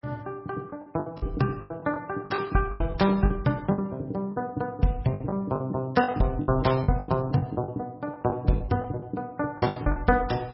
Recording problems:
lossy codec; MP3, log-spectral distance 2 dB, nothing above 5.5 kHz
packet loss; 14% of the sound replaced, filled with the last packet

